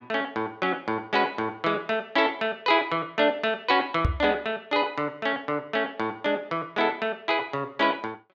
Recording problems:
microphone bump; at 4 s; peak +5 dB vs average level

